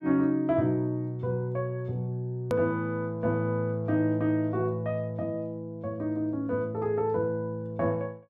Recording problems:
hard cut with a click; at 2.5 s

